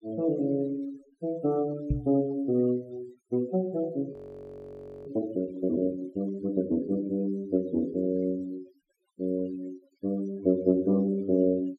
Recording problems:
denoising artefacts; signal-to-artefact ratio 23 dB
microphone bump; at 2 s; peak +5 dB vs average level
frozen audio; at 4 s for 1 s

